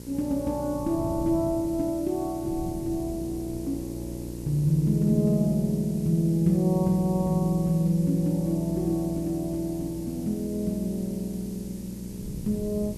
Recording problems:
electrical hum; 60 Hz, harmonics up to 600 Hz, SNR 13 dB
hiss; slope +4 dB per octave, SNR 21 dB
wind on the microphone; below 180 Hz, SNR 17 dB

